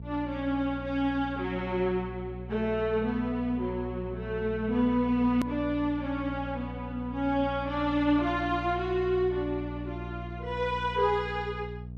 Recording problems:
hum; 60 Hz, harmonics up to 480 Hz, SNR 10 dB
edit click; at 5.5 s

